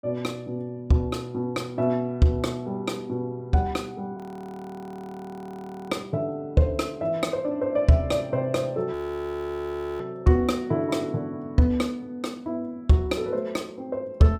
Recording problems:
audio freezing; at 4 s for 1.5 s and at 9 s for 1 s

